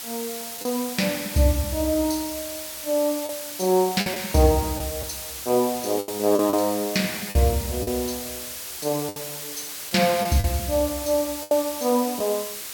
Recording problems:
hiss; slope +1 dB per octave, SNR 8 dB
lost packets; 5% of the sound replaced, filled with the last packet

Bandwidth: 17.5 kHz